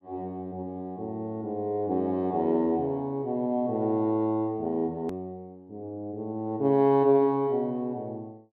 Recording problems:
edit click; at 5 s

